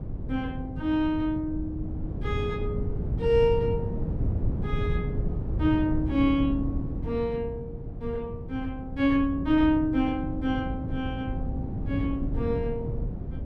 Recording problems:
wind noise; below 160 Hz, SNR 4 dB

